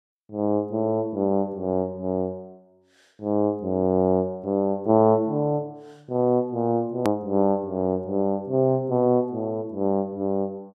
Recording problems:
click at an edit; at 7 s

